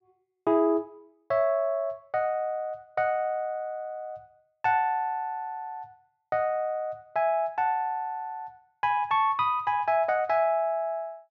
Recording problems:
none

